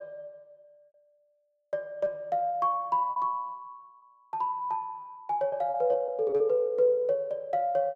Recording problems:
lost packets; 4% of the sound replaced, filled with repeated pitch periods

